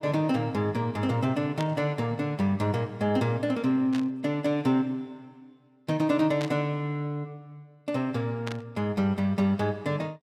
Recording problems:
burst of static; 4 times, first at 1.5 s; peak -5 dB vs average level

